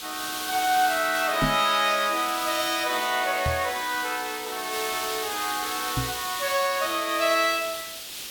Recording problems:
hiss; SNR 7 dB
microphone thump; at 1.5 s, at 3.5 s and at 6 s; peak +2 dB vs average level

